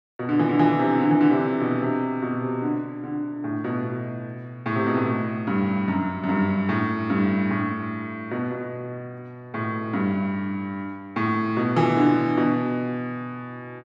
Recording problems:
none

